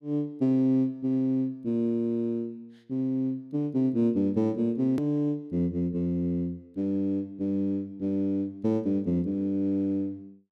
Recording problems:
edit click; at 5 s

